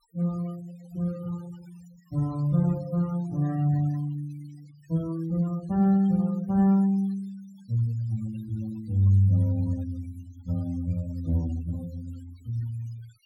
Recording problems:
denoising artefacts; signal-to-artefact ratio 24 dB

